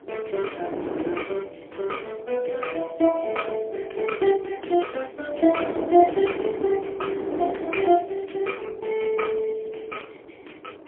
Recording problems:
phone line; 260 Hz to 3.2 kHz, AMR-NB, then MP3
wind on the microphone; below 560 Hz, SNR 8 dB

